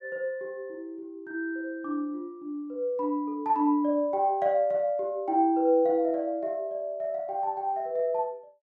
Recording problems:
none

